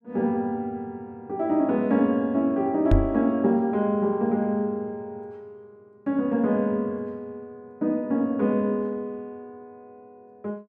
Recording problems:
microphone thump; at 3 s; peak +7 dB vs average level

